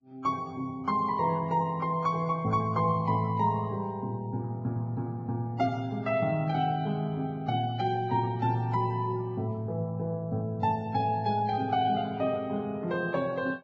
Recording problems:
lossy compression; Vorbis, log-spectral distance 2 dB

